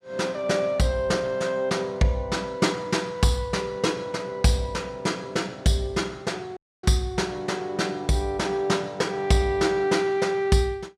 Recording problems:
dropout; at 6.5 s

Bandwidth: 14.5 kHz